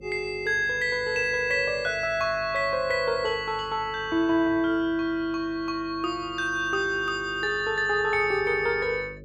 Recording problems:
hum; 50 Hz, harmonics up to 550 Hz, SNR 22 dB

